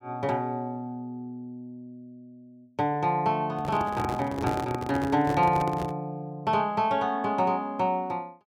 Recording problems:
handling noise; from 3.5 to 6 s; peak +1 dB vs average level

